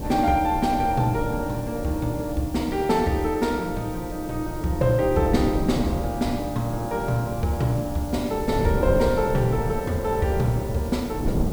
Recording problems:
hiss; SNR 19 dB
wind noise; below 280 Hz, SNR 7 dB

